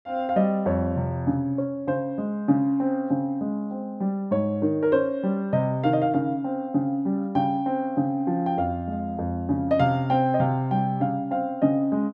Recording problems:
none

